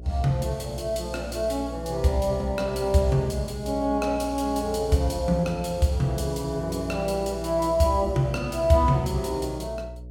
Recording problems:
hum; 60 Hz, harmonics up to 660 Hz, SNR 13 dB

